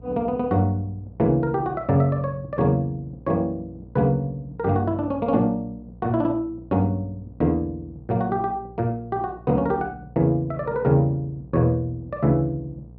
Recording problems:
mains hum; 60 Hz, harmonics up to 720 Hz, SNR 21 dB

